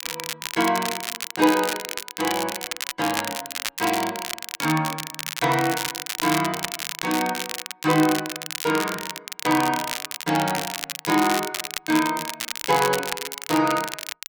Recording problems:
crackling; vinyl, SNR 5 dB

